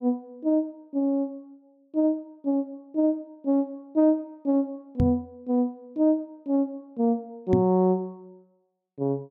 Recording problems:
microphone bump; at 5 s and at 7.5 s; peak +5 dB vs average level

